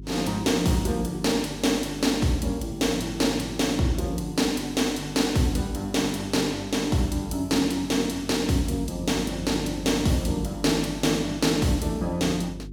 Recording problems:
hum; 50 Hz, harmonics up to 400 Hz, SNR 16 dB

